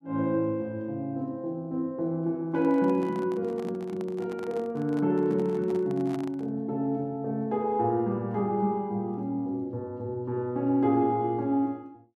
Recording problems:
handling noise; from 2.5 to 6.5 s; peak -8 dB vs average level

